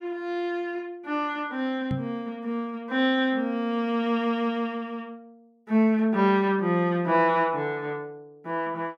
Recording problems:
microphone thump; at 2 s; peak 0 dB vs average level

